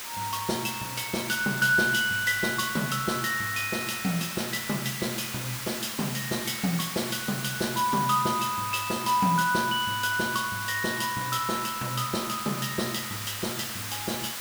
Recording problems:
background hiss; SNR 6 dB

